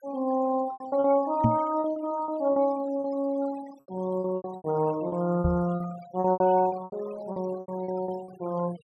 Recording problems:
noise reduction artefacts; signal-to-artefact ratio 20 dB
packet loss; 14% of the sound replaced, filled with repeated pitch periods
microphone thump; at 1.5 s and at 5.5 s; peak +8 dB vs average level

